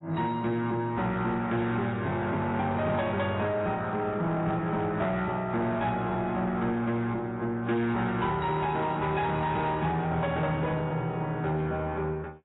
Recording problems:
lossy compression; AAC, log-spectral distance 2 dB, nothing above 3.7 kHz
distorted audio; soft clipping, signal-to-distortion ratio 11 dB

